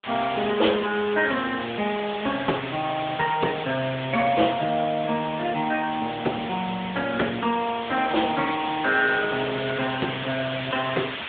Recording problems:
telephone audio; 260 Hz to 3.5 kHz, AMR-NB
hiss; SNR 8 dB

